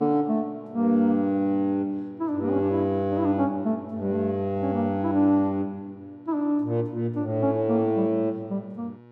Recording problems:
electrical hum; 60 Hz, harmonics up to 1.9 kHz, SNR 27 dB

